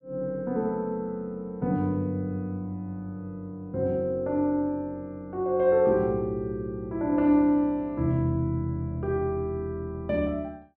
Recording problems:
none

